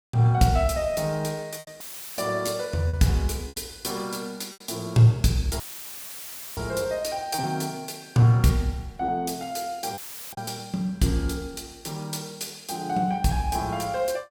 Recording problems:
lost packets; 4% of the sound replaced, filled with repeated pitch periods
audio cutting out; at 2 s, at 5.5 s for 1 s and at 10 s; filled with static

